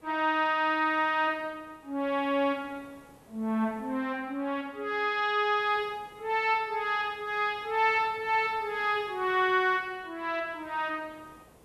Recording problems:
background hiss; slope -7 dB per octave, SNR 28 dB

